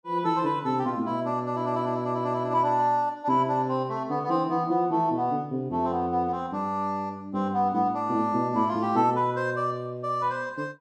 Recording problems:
none

